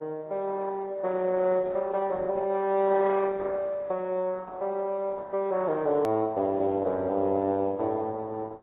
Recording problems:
lossy compression; Opus, then AAC, log-spectral distance 2 dB, nothing above 14.1 kHz
click at an edit; at 6 s

